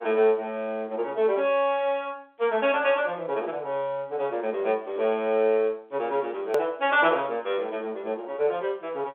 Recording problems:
telephone audio; 280 Hz to 3.5 kHz, G.711
hard cut with a click; at 6.5 s

